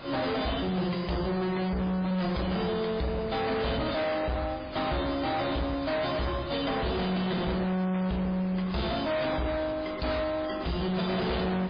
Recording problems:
lossy codec; MP3, then AAC, log-spectral distance 8 dB
distortion; hard clipping, signal-to-distortion ratio 6 dB
background hiss; SNR 16 dB
wind noise; below 930 Hz, SNR 19 dB

